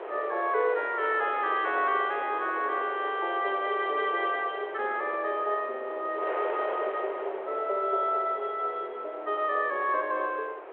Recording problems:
telephone audio; 340 Hz to 3.5 kHz, G.726
wind on the microphone; below 970 Hz, SNR 10 dB

